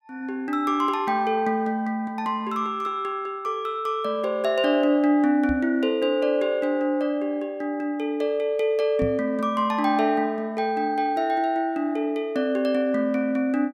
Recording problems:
knock on the microphone; at 5.5 s and at 9 s; peak -2 dB vs average level

